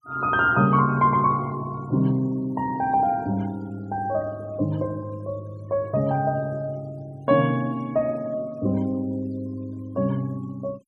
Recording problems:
noise reduction artefacts; signal-to-artefact ratio 27 dB

